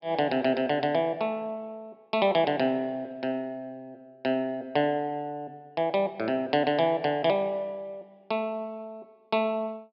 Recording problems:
treble missing; nothing above 5.3 kHz

